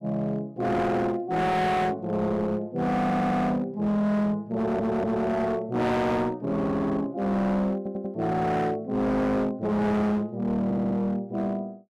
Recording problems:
distortion; hard clipping, signal-to-distortion ratio 7 dB
audio stuttering; 4 times, first at 3 s

